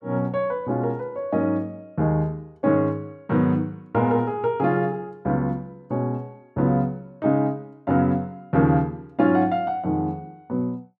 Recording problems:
none

